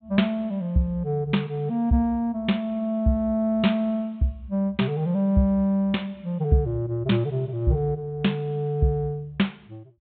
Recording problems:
treble missing; nothing above 4 kHz

